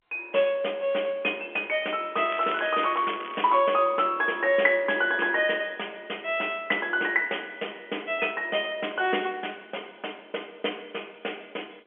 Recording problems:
phone line; 260 Hz to 3.4 kHz, G.711
crackle; from 2 to 3.5 s; loose cable, SNR 14 dB

